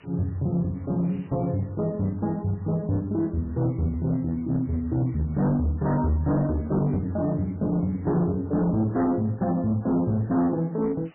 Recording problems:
codec artefacts; MP3, log-spectral distance 6 dB
distortion; hard clipping, signal-to-distortion ratio 11 dB
background hiss; SNR 29 dB

